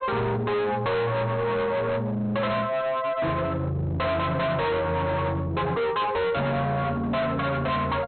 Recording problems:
low-pass filter; nothing above 4.2 kHz
distortion; hard clipping, signal-to-distortion ratio 6 dB

